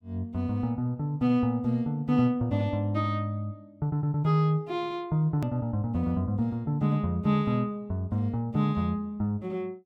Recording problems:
edit click; at 5.5 s

